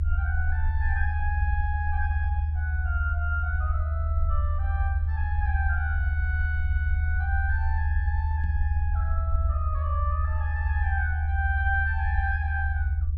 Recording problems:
rumble; below 78 Hz, strongest tone 76 Hz, SNR -7 dB
microphone thump; at 8.5 s; peak -1 dB vs average level

